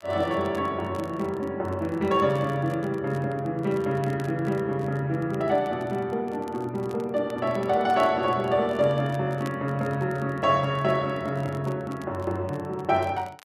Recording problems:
crackle; vinyl, SNR 26 dB

